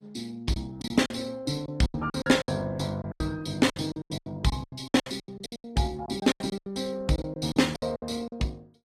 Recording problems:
lossy compression; Opus, log-spectral distance 4 dB, nothing above 15.5 kHz
packet loss; 19% of the sound replaced, filled with silence

